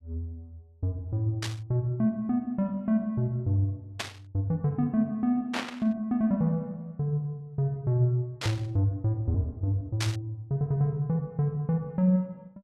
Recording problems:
burst of static; 5 times, first at 1.5 s; peak +1 dB vs average level

